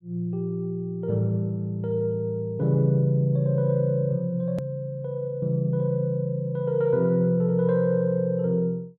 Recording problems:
edit click; at 4.5 s

